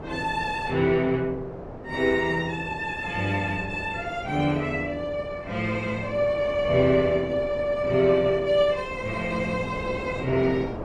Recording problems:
wind noise; below 640 Hz, SNR 12 dB

